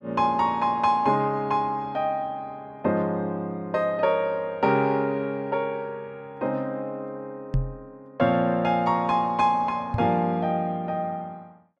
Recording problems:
knock on the microphone; at 7.5 s and at 10 s; peak +3 dB vs average level

